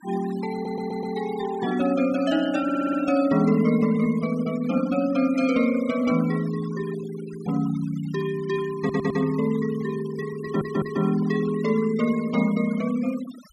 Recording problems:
denoising artefacts; signal-to-artefact ratio 18 dB
stutter; 4 times, first at 0.5 s

